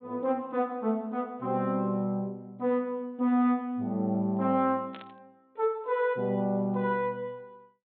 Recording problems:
treble cut off; nothing above 4 kHz
burst of static; at 5 s; peak -12 dB vs average level

